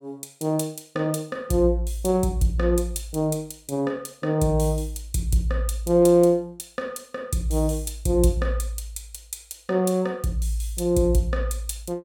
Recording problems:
none

